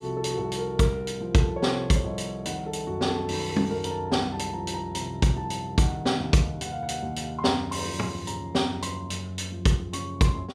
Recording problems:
none

